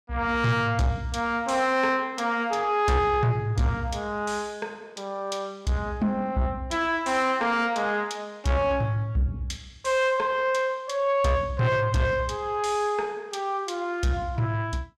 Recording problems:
distorted audio; soft clipping, signal-to-distortion ratio 12 dB

